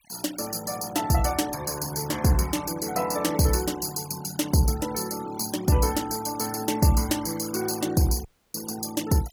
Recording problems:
noise reduction artefacts; signal-to-artefact ratio 16 dB
dropout; at 8.5 s

